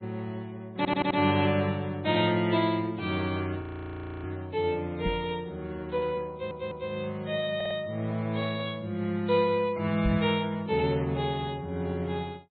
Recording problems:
treble missing; nothing above 4 kHz
lossy codec; MP3, log-spectral distance 2 dB
stutter; at 1 s, at 6.5 s and at 7.5 s
audio freezing; at 3.5 s for 0.5 s
knock on the microphone; at 5 s and at 10 s; peak +2 dB vs average level

